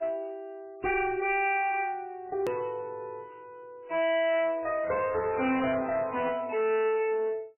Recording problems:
lossy codec; MP3, log-spectral distance 3 dB, nothing above 16.1 kHz
distortion; hard clipping, uneven, signal-to-distortion ratio 6 dB
edit click; at 2.5 s

